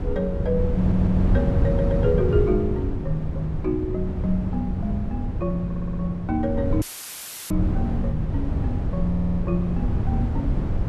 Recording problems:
wind noise; below 160 Hz, SNR -1 dB
stutter; 4 times, first at 1 s
dropout; at 7 s for 0.5 s; filled with static

